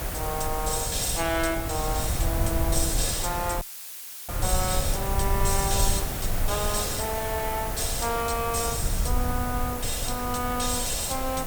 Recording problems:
background hiss; SNR 5 dB
low-frequency rumble; below 88 Hz, SNR 4 dB
dropout; at 3.5 s for 0.5 s; filled with static

